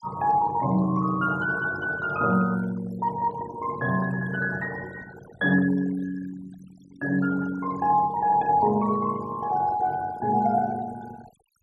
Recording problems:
denoising artefacts; signal-to-artefact ratio 19 dB

